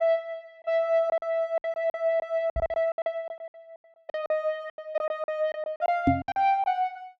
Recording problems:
lost packets; 16% of the sound replaced, filled with silence
knock on the microphone; at 2.5 s and at 6 s; peak +9 dB vs average level

